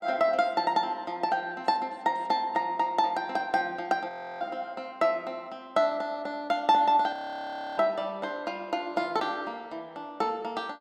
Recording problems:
frozen audio; at 4 s and at 7 s for 0.5 s

